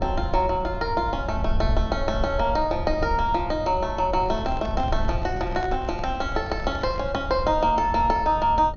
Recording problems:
treble cut off; nothing above 6.8 kHz
low-frequency rumble; below 80 Hz, SNR 8 dB
microphone handling noise; from 4 to 7 s; peak -7 dB vs average level

